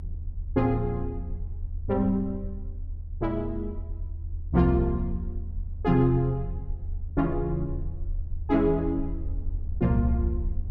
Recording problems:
rumble; below 80 Hz, SNR 8 dB

